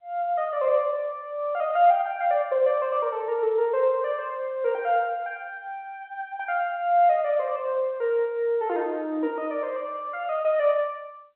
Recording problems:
telephone audio; 280 Hz to 3.5 kHz, G.711

